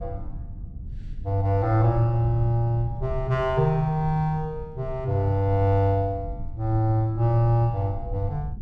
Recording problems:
low-frequency rumble; below 94 Hz, SNR 13 dB

